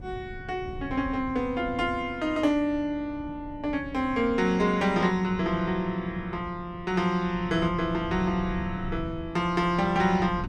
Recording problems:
wind on the microphone; below 180 Hz, SNR 14 dB

